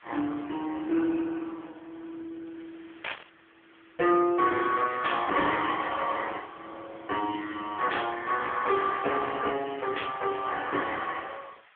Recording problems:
phone line; 320 Hz to 3.3 kHz, AMR-NB
background hiss; SNR 27 dB
static burst; 4 times, first at 3 s; peak 0 dB vs average level

